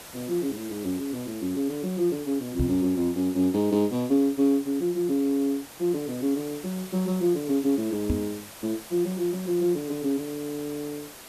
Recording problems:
hiss; slope -2 dB per octave, SNR 16 dB
microphone thump; at 2.5 s and at 8 s; peak +4 dB vs average level

